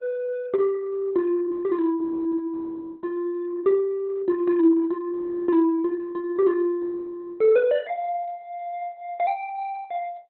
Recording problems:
codec artefacts; Opus, log-spectral distance 2 dB, nothing above 4 kHz

